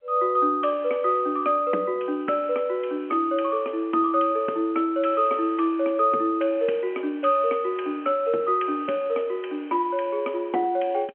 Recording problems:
telephone audio; 220 Hz to 3.2 kHz, G.711

